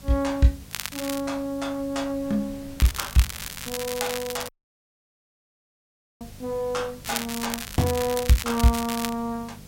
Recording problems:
electrical hum; 50 Hz, harmonics up to 500 Hz, SNR 22 dB
background hiss; slope +2 dB per octave, SNR 23 dB
wind noise; below 300 Hz, SNR 22 dB
crackle; at 0.5 s, from 3 to 4.5 s and from 7 to 9 s; loose cable, SNR 6 dB
audio cutting out; at 4.5 s for 1.5 s

